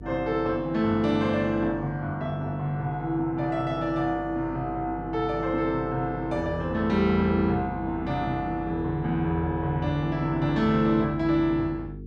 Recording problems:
hum; 50 Hz, harmonics up to 450 Hz, SNR 15 dB

